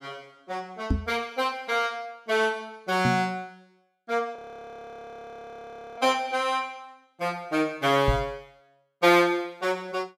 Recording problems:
microphone thump; at 1 s, at 3 s and at 8 s; peak +5 dB vs average level
audio freezing; at 4.5 s for 1.5 s

